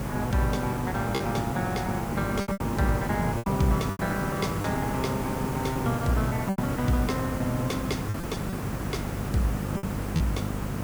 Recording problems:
electrical hum; 50 Hz, harmonics up to 600 Hz, SNR 7 dB
hiss; SNR 3 dB
lost packets; 6% of the sound replaced, filled with repeated pitch periods

